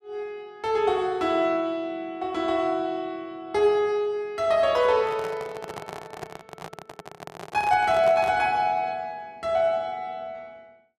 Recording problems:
handling noise; from 5 to 8.5 s; peak -6 dB vs average level

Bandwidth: 14 kHz